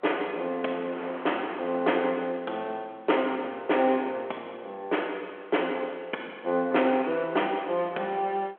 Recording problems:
phone line; 280 Hz to 3.3 kHz, G.726
wind on the microphone; below 1.5 kHz, SNR 19 dB

